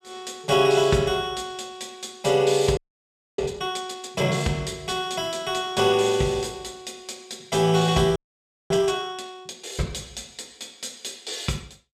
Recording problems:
frozen audio; at 3 s for 0.5 s and at 8 s for 0.5 s

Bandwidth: 15 kHz